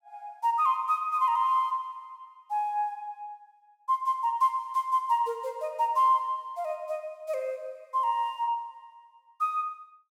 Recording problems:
none

